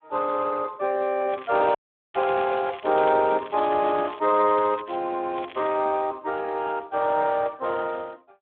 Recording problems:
telephone audio; 260 Hz to 3.8 kHz, Speex
crackling; from 1.5 to 5 s and at 5.5 s; loose cable, SNR 19 dB
dropout; at 2 s

